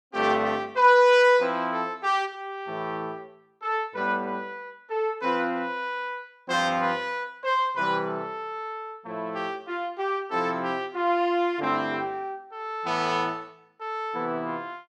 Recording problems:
none

